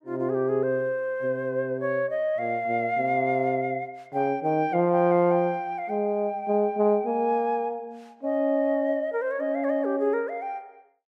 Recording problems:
none

